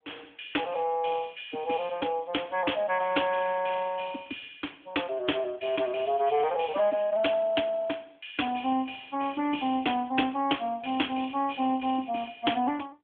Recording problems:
telephone audio; 220 Hz to 3.5 kHz, AMR-NB

